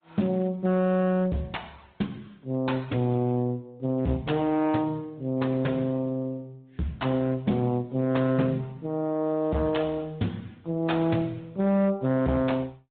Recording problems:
low-pass filter; nothing above 3.9 kHz
lossy compression; Speex, then Opus, log-spectral distance 3 dB
distortion; hard clipping, uneven, signal-to-distortion ratio 11 dB

